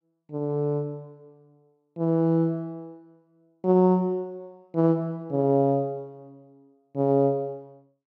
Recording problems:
none

